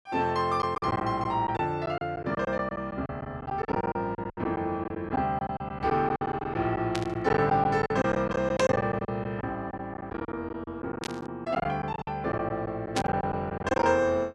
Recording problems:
packet loss; 13% of the sound replaced, filled with silence
static burst; 4 times, first at 7 s; peak +1 dB vs average level

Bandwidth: 12 kHz